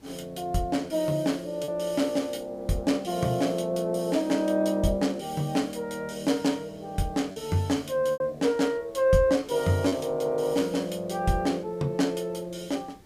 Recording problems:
hiss; SNR 28 dB
lost packets; 1.5% of the sound replaced, filled with repeated pitch periods

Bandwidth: 15.5 kHz